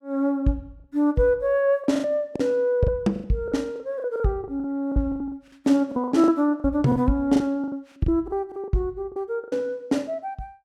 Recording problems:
lost packets; 13% of the sound replaced, filled with the last packet

